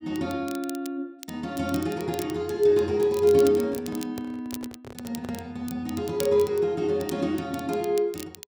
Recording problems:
crackle; vinyl, SNR 17 dB
handling noise; from 3.5 to 5.5 s; peak -9 dB vs average level

